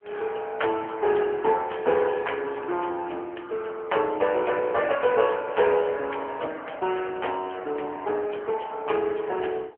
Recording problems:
telephone audio; 300 Hz to 3.2 kHz, AMR-NB

